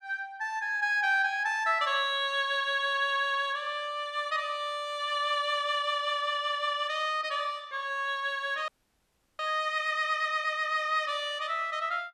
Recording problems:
audio freezing; at 8.5 s for 0.5 s

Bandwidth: 13.5 kHz